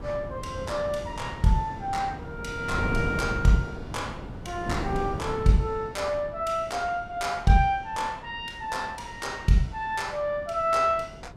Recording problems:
wind noise; below 330 Hz, SNR 10 dB

